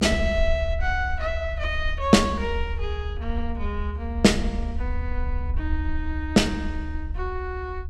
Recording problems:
low-frequency rumble; below 74 Hz, SNR 5 dB

